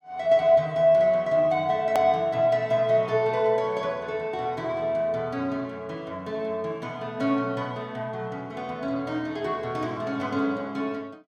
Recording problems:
hard cut with a click; at 2 s

